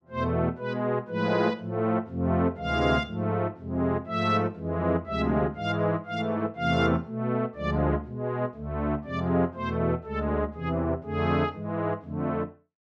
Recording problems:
none

